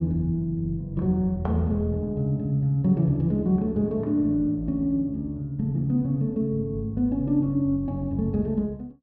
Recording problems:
none

